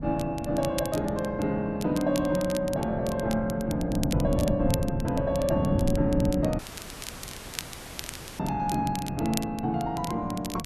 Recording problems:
wind on the microphone; below 230 Hz, SNR 5 dB
crackling; vinyl, SNR 13 dB
audio cutting out; at 6.5 s for 2 s

